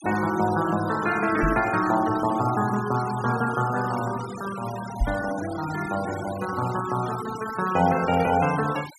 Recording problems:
denoising artefacts; signal-to-artefact ratio 14 dB
microphone bump; at 1.5 s and at 5 s; peak +3 dB vs average level

